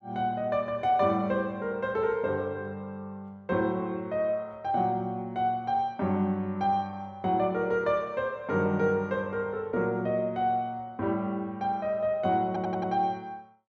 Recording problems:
audio stuttering; at 12 s

